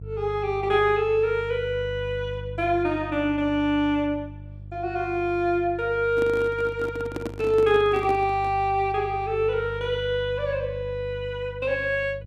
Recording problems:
hum; 50 Hz, harmonics up to 350 Hz, SNR 14 dB
handling noise; from 6 to 8.5 s; peak -3 dB vs average level

